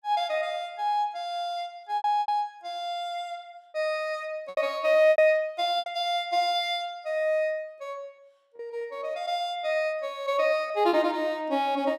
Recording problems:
lost packets; 5% of the sound replaced, filled with repeated pitch periods

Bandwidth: 17 kHz